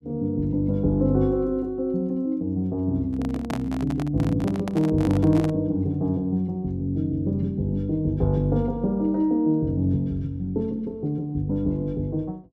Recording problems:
microphone handling noise; from 3 to 5.5 s; peak -3 dB vs average level

